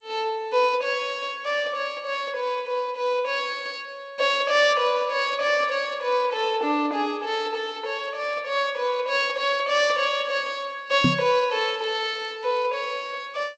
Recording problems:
lossy codec; G.722, log-spectral distance 2 dB, nothing above 7.6 kHz
microphone thump; at 11 s; peak +6 dB vs average level

